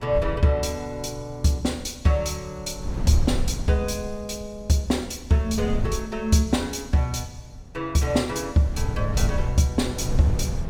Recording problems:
wind noise; below 110 Hz, SNR 5 dB

